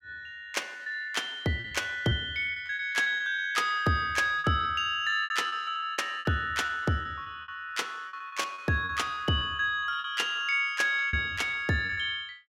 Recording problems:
lost packets; 14% of the sound replaced, filled with repeated pitch periods

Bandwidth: 16 kHz